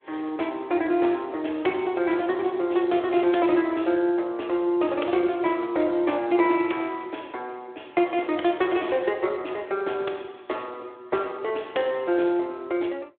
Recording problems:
phone line; 280 Hz to 3.5 kHz, Speex

